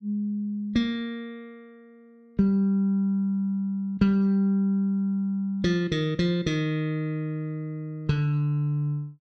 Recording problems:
none

